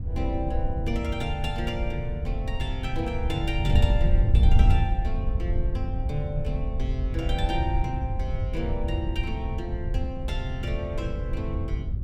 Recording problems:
wind on the microphone; below 86 Hz, SNR -5 dB

